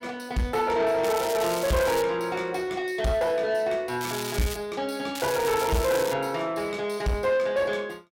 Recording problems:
distorted audio; soft clipping, signal-to-distortion ratio 10 dB
crackling; at 1 s, at 4 s and at 5 s; loose cable, SNR 9 dB

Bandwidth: 16 kHz